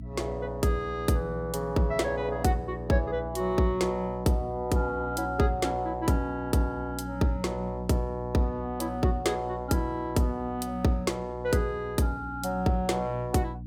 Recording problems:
hum; 60 Hz, harmonics up to 300 Hz, SNR 11 dB

